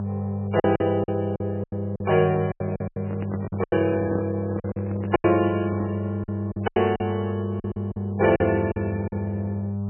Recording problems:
lossy codec; MP3, log-spectral distance 2 dB, nothing above 2.5 kHz
hum; 50 Hz, harmonics up to 800 Hz, SNR 4 dB
lost packets; 12% of the sound replaced, filled with silence
microphone handling noise; from 2 to 6 s; peak -4 dB vs average level

